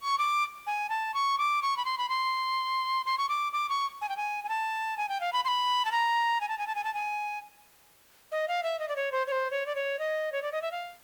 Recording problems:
background hiss; slope -1 dB per octave, SNR 27 dB

